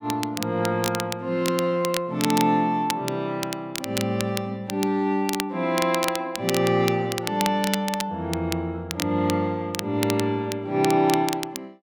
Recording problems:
crackling; vinyl, SNR 8 dB

